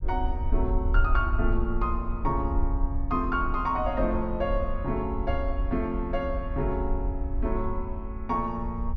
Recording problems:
low-pass filter; nothing above 6.7 kHz
low-frequency rumble; below 58 Hz, SNR 2 dB

